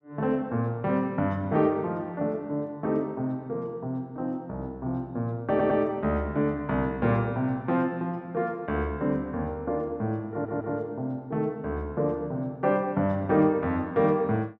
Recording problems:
audio stuttering; at 5.5 s and at 10 s

